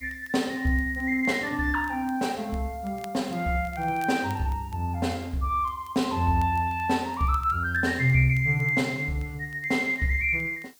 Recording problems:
hiss; SNR 28 dB
crackling; vinyl, SNR 29 dB

